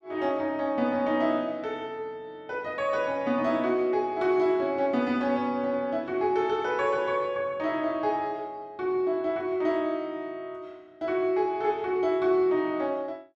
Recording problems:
none

